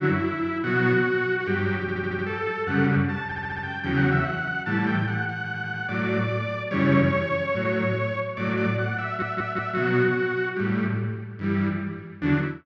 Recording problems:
audio stuttering; 4 times, first at 2 s

